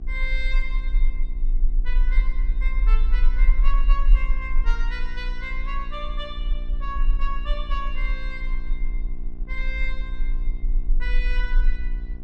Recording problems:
hum; 60 Hz, harmonics up to 1.1 kHz, SNR 11 dB
rumble; below 36 Hz, strongest tone 24 Hz, SNR -8 dB

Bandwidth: 14 kHz